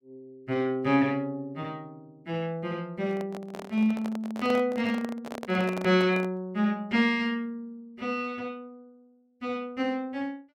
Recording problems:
handling noise; from 3 to 6.5 s; peak -4 dB vs average level

